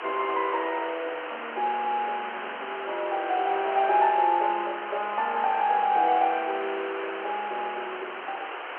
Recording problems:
telephone audio; 320 Hz to 3.2 kHz, G.711
background hiss; SNR 8 dB

